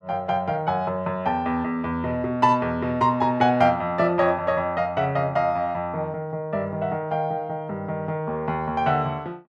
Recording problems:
none

